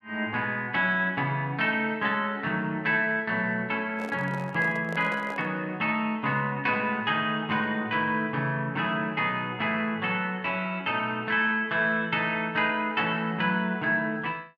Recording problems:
handling noise; from 4 to 5.5 s; peak -9 dB vs average level

